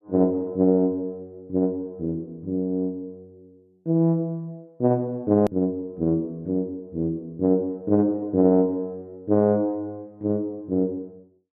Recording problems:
click at an edit; at 5.5 s

